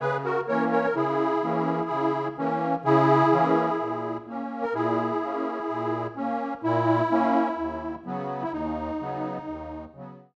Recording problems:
none

